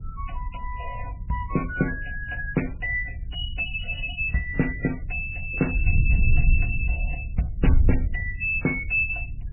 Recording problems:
codec artefacts; MP3, log-spectral distance 3 dB, nothing above 2.7 kHz
wind on the microphone; below 76 Hz, SNR 2 dB

